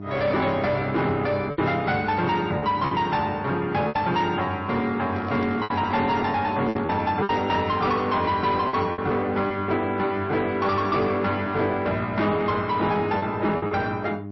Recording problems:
lossy codec; MP3, log-spectral distance 2 dB, nothing above 5.7 kHz
distortion; soft clipping, signal-to-distortion ratio 11 dB
hum; 50 Hz, harmonics up to 1 kHz, SNR 11 dB
packet loss; 5% of the sound replaced, filled with repeated pitch periods
handling noise; from 5 to 7.5 s; peak -2 dB vs average level

